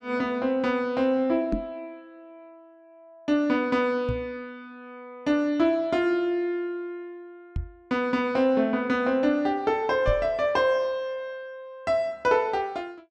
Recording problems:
microphone thump; 4 times, first at 1.5 s; peak +1 dB vs average level

